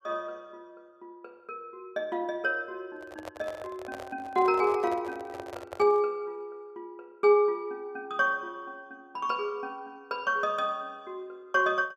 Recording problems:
microphone handling noise; from 3 to 6 s; peak -7 dB vs average level

